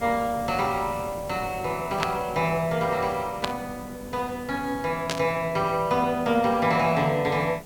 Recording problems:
hiss; SNR 15 dB
burst of static; at 2 s, at 3.5 s and at 5 s; peak +3 dB vs average level

